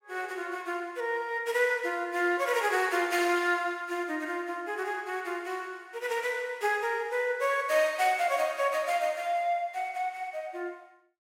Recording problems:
none

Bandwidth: 16 kHz